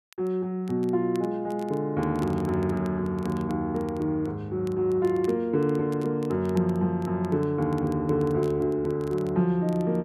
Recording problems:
crackling; vinyl, SNR 27 dB

